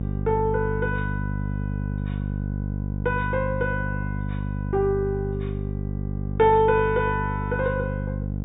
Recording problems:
low-pass filter; nothing above 4 kHz
mains hum; 50 Hz, harmonics up to 550 Hz, SNR 4 dB

